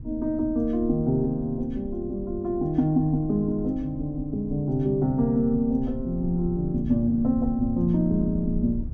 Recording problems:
rumble; below 96 Hz, SNR 13 dB

